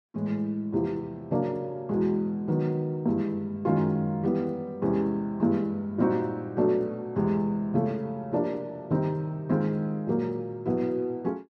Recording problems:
none

